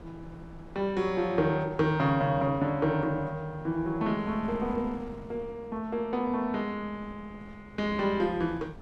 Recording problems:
wind noise; below 420 Hz, SNR 19 dB

